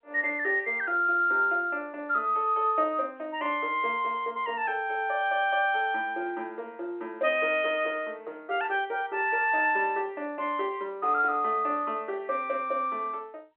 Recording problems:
telephone audio; 300 Hz to 3.5 kHz, G.711

